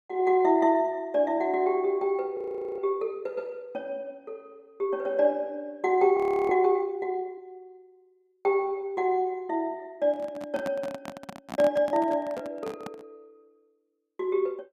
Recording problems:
frozen audio; at 2.5 s and at 6 s
microphone handling noise; from 10 to 13 s; peak -4 dB vs average level

